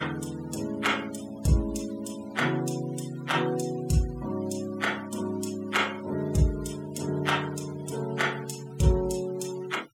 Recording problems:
denoising artefacts; signal-to-artefact ratio 18 dB

